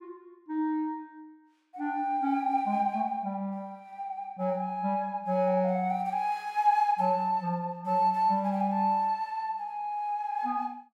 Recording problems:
none

